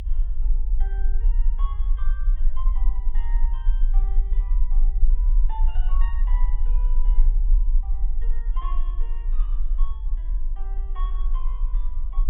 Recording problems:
treble cut off; nothing above 3.6 kHz
low-frequency rumble; below 36 Hz, strongest tone 24 Hz, SNR -20 dB

